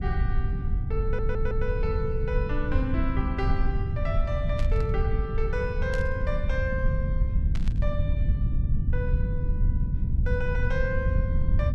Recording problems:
rumble; below 94 Hz, SNR -5 dB
stutter; at 1 s
static burst; at 4.5 s, at 6 s and at 7.5 s; peak -4 dB vs average level

